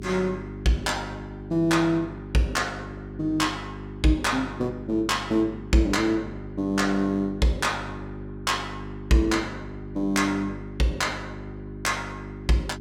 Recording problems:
hum; 50 Hz, harmonics up to 400 Hz, SNR 12 dB

